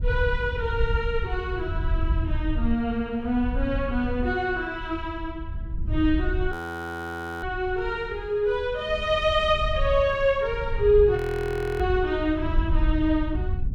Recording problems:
wind on the microphone; below 80 Hz, SNR 6 dB
frozen audio; at 6.5 s for 1 s and at 11 s for 0.5 s

